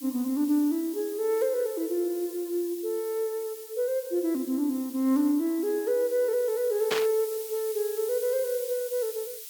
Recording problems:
hiss; slope +9 dB per octave, SNR 13 dB
static burst; at 7 s; peak +2 dB vs average level

